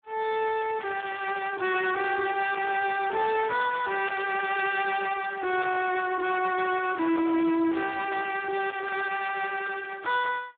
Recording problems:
phone line; 150 Hz to 3.5 kHz, Speex
distortion; soft clipping, signal-to-distortion ratio 10 dB

